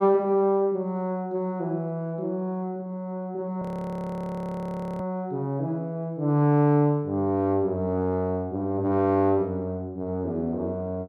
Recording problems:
audio freezing; at 3.5 s for 1.5 s

